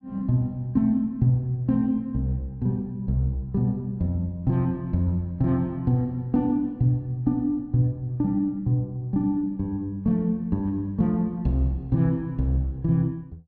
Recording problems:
none

